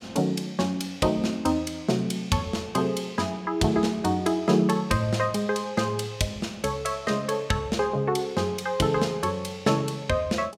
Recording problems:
none

